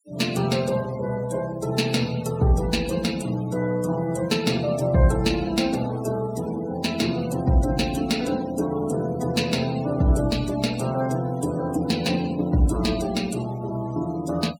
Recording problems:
denoising artefacts; signal-to-artefact ratio 17 dB

